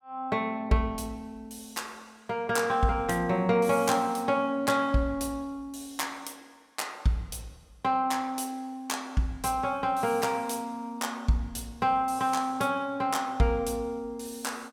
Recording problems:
none

